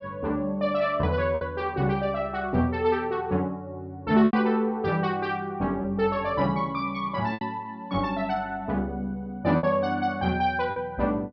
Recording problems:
low-pass filter; nothing above 5.5 kHz
lost packets; 3% of the sound replaced, filled with repeated pitch periods

